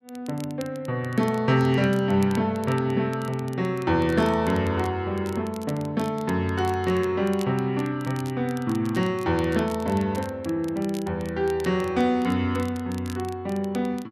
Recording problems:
crackling; vinyl, SNR 22 dB

